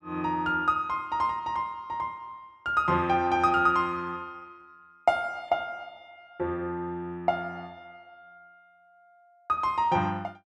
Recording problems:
none

